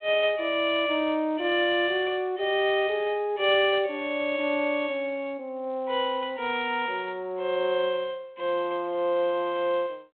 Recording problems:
phone line; 220 Hz to 3.7 kHz, G.726

